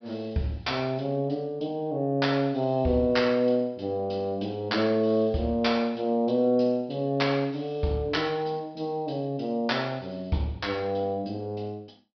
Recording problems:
treble cut off; nothing above 5.5 kHz

